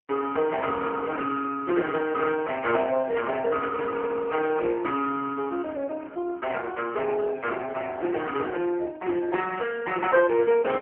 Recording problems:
phone line; 300 Hz to 3.2 kHz, AMR-NB

